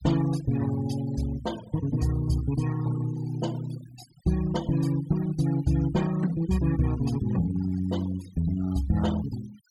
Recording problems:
noise reduction artefacts; signal-to-artefact ratio 18 dB

